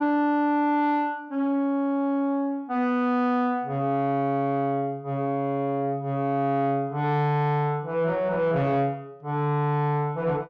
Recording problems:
distortion; soft clipping, signal-to-distortion ratio 11 dB

